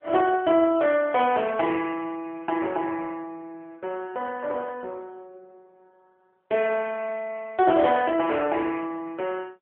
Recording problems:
telephone audio; 300 Hz to 3 kHz, AMR-NB

